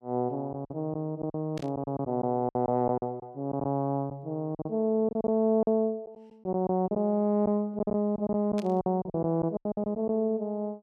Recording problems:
lost packets; 11% of the sound replaced, filled with silence
burst of static; at 1.5 s and at 8.5 s; peak -10 dB vs average level

